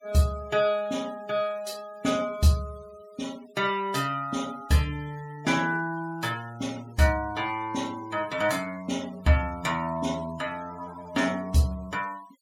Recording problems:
denoising artefacts; signal-to-artefact ratio 20 dB

